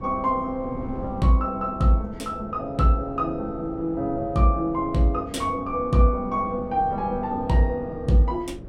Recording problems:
wind noise; below 290 Hz, SNR 16 dB

